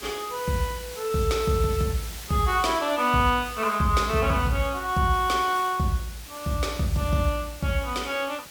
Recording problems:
background hiss; slope 0 dB per octave, SNR 15 dB

